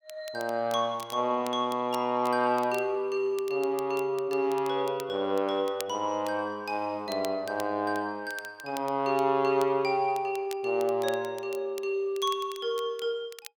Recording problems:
crackle; vinyl, SNR 19 dB

